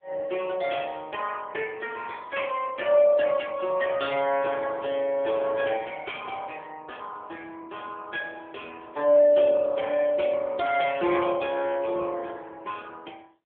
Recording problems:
phone line; 300 Hz to 3.3 kHz, AMR-NB

